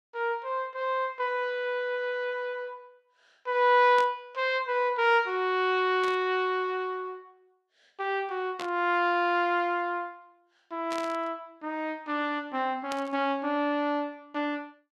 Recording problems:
burst of static; 5 times, first at 4 s; peak -6 dB vs average level

